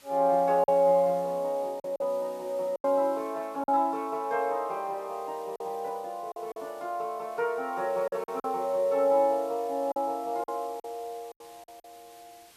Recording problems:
hiss; slope 0 dB per octave, SNR 25 dB
lost packets; 6% of the sound replaced, filled with silence

